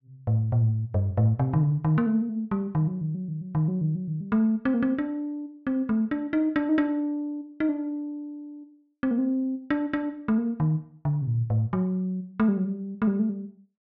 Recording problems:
none

